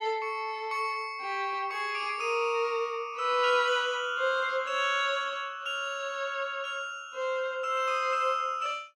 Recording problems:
none

